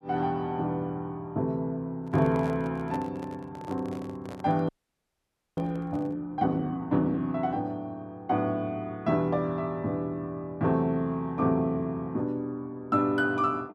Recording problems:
microphone handling noise; from 2 to 6 s; peak -6 dB vs average level
frozen audio; at 4.5 s for 1 s

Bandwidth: 13 kHz